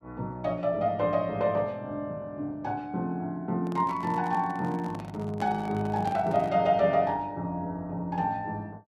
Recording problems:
handling noise; from 3.5 to 6.5 s; peak -6 dB vs average level

